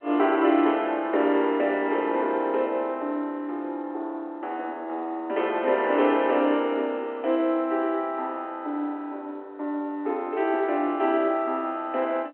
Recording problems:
telephone audio; 260 Hz to 3.2 kHz, G.711

